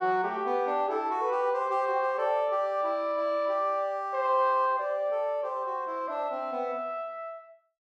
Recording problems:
none

